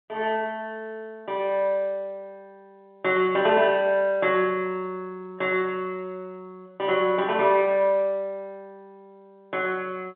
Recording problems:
telephone audio; 190 Hz to 3.5 kHz, G.711

